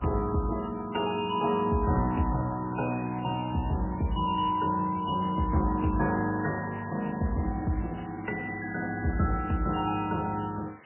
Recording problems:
lossy compression; MP3, log-spectral distance 12 dB, nothing above 2.5 kHz
background hiss; SNR 23 dB

